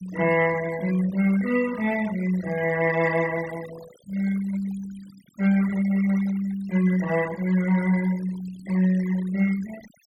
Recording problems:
denoising artefacts; signal-to-artefact ratio 17 dB

